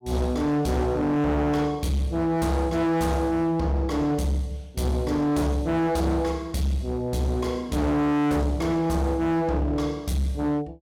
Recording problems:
distortion; hard clipping, uneven, signal-to-distortion ratio 7 dB

